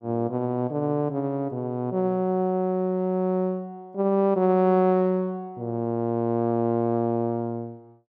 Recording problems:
none

